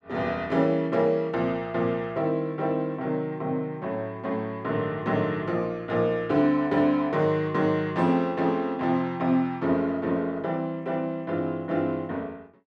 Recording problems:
none

